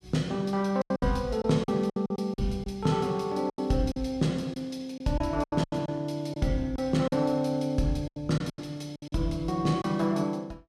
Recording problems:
lost packets; 11% of the sound replaced, filled with silence

